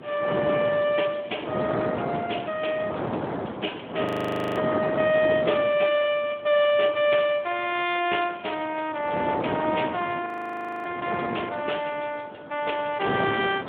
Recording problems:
telephone audio; 280 Hz to 3.4 kHz, Speex
wind noise; below 820 Hz, SNR 5 dB
audio freezing; at 4 s for 0.5 s and at 10 s for 0.5 s

